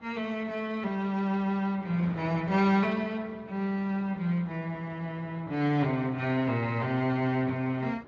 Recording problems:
lossy compression; AAC, then Speex, log-spectral distance 2 dB
wind noise; below 920 Hz, SNR 20 dB

